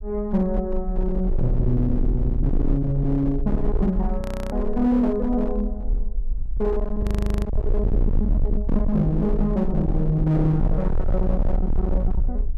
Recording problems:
distortion; hard clipping, signal-to-distortion ratio 7 dB
low-frequency rumble; below 52 Hz, SNR 3 dB
frozen audio; at 4 s and at 7 s

